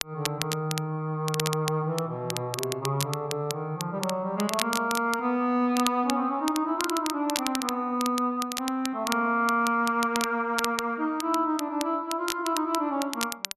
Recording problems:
crackle; vinyl, SNR 7 dB

